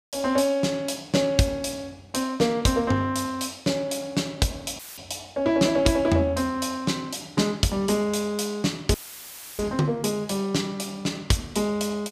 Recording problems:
audio cutting out; at 5 s and at 9 s for 0.5 s; filled with static

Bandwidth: 15 kHz